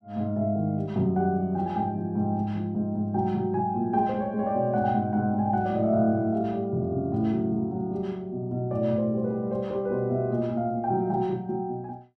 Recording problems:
none

